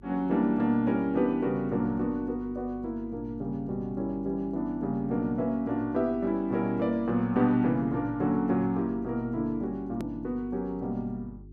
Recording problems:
hum; 50 Hz, harmonics up to 400 Hz, SNR 20 dB
hard cut with a click; at 10 s

